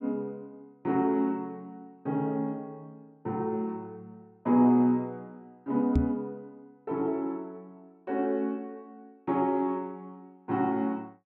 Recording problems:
microphone bump; at 6 s; peak +6 dB vs average level

